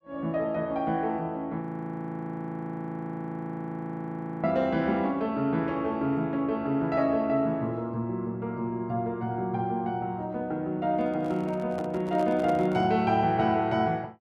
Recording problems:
audio freezing; at 1.5 s for 3 s
handling noise; from 11 to 13 s; peak -6 dB vs average level

